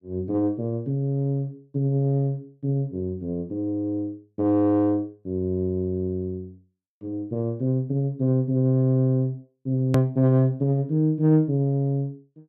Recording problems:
hard cut with a click; at 10 s

